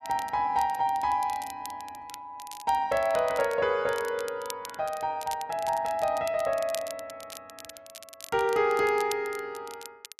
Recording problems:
crackling; vinyl, SNR 16 dB

